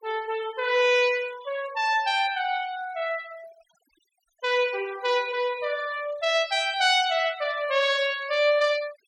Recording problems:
denoising artefacts; signal-to-artefact ratio 21 dB

